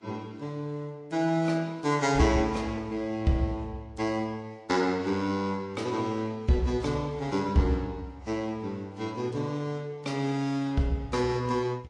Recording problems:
lossy compression; Vorbis, then Vorbis, log-spectral distance 2 dB

